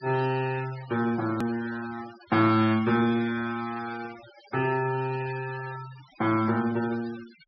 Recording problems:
treble missing; nothing above 5.5 kHz
denoising artefacts; signal-to-artefact ratio 18 dB
click at an edit; at 1.5 s

